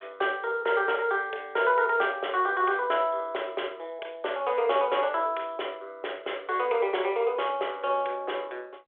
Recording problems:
phone line; 320 Hz to 3.5 kHz, G.726

